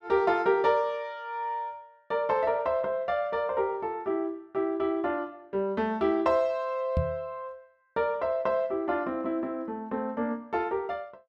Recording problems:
microphone thump; at 7 s; peak +4 dB vs average level

